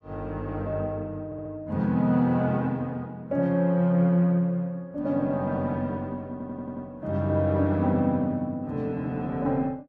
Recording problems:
stutter; at 1.5 s and at 6.5 s

